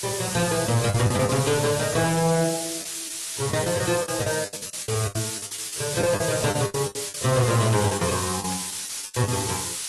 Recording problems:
codec artefacts; AAC, log-spectral distance 17 dB, nothing above 12 kHz
distortion; hard clipping, uneven, signal-to-distortion ratio 11 dB
hiss; slope +3 dB per octave, SNR 4 dB
packet loss; 13% of the sound replaced, filled with the last packet
static burst; at 1.5 s, at 6 s and at 8.5 s; peak -9 dB vs average level

